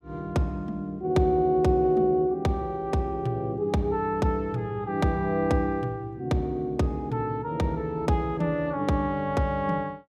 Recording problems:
none

